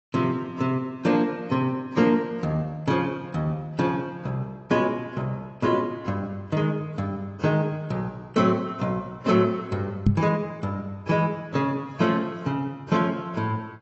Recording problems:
codec artefacts; AAC, log-spectral distance 2 dB, nothing above 7.8 kHz
microphone thump; at 10 s; peak +9 dB vs average level

